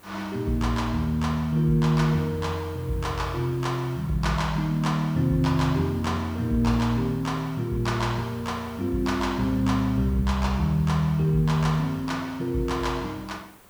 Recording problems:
hiss; slope -5 dB per octave, SNR 25 dB

